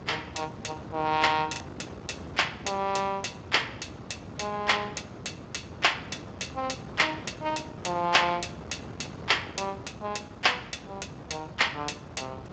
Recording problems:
lossy compression; Speex, log-spectral distance 5 dB, nothing above 7.3 kHz
wind noise; below 680 Hz, SNR 13 dB
packet loss; 0.4% of the sound replaced, filled with the last packet

